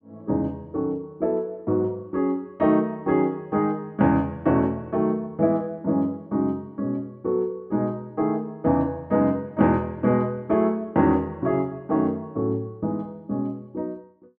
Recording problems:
none

